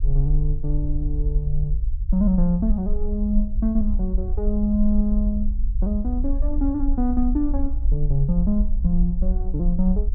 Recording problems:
low-frequency rumble; below 50 Hz, strongest tone 20 Hz, SNR 1 dB

